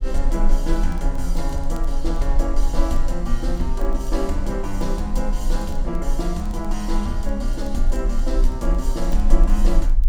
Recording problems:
rumble; below 36 Hz, strongest tone 20 Hz, SNR -2 dB
crackling; vinyl, SNR 27 dB

